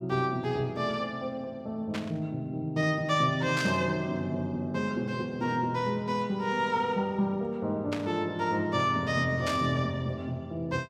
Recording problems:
static burst; 4 times, first at 2 s; peak -2 dB vs average level

